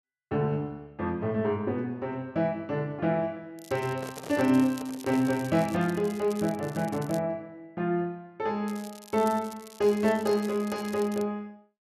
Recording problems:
crackle; from 3.5 to 7 s and from 8.5 to 11 s; loose cable, SNR 19 dB
handling noise; from 4 to 5.5 s; peak -8 dB vs average level

